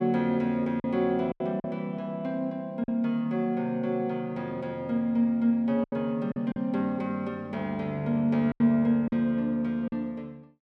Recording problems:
lost packets; 5% of the sound replaced, filled with silence

